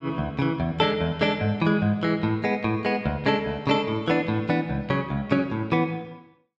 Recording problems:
none

